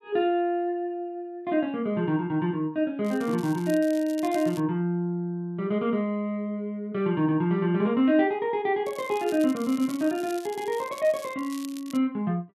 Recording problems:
crackling; from 3 to 4.5 s and from 9 to 12 s; loose cable, SNR 19 dB

